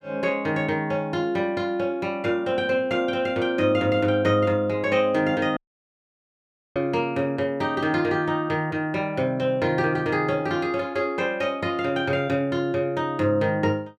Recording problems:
dropout; at 5.5 s for 1 s

